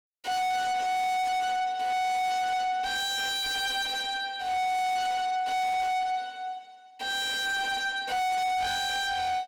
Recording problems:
distorted audio; soft clipping, signal-to-distortion ratio 5 dB

